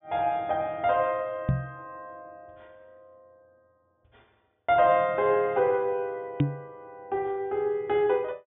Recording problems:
treble missing; nothing above 3.7 kHz
microphone thump; at 1.5 s and at 6.5 s; peak +6 dB vs average level

